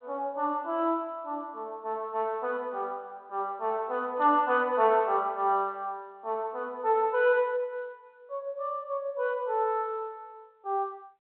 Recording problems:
phone line; 220 Hz to 3.3 kHz, G.726

